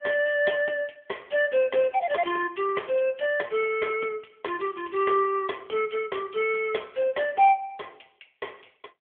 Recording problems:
phone line; 300 Hz to 3.4 kHz, AMR-NB

